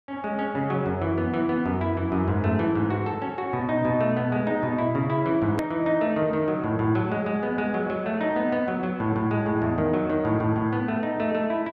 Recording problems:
edit click; at 5.5 s

